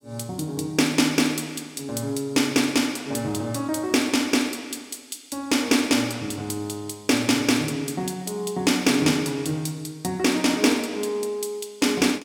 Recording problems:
none

